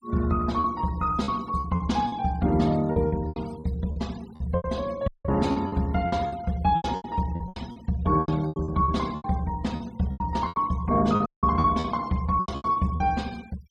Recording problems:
denoising artefacts; signal-to-artefact ratio 22 dB
packet loss; 15% of the sound replaced, filled with repeated pitch periods
audio cutting out; at 5 s and at 11 s

